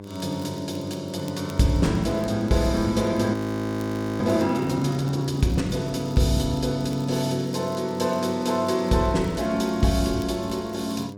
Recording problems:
hum; 50 Hz, harmonics up to 1.1 kHz, SNR 15 dB
crackle; vinyl, SNR 27 dB
frozen audio; at 3.5 s for 1 s

